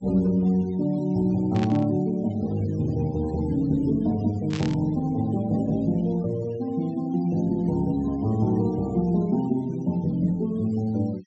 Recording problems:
low-pass filter; nothing above 7.9 kHz
denoising artefacts; signal-to-artefact ratio 23 dB
burst of static; at 1.5 s and at 4.5 s; peak -8 dB vs average level

